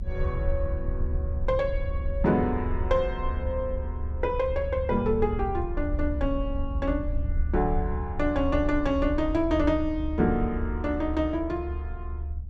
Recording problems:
low-frequency rumble; below 72 Hz, SNR 4 dB

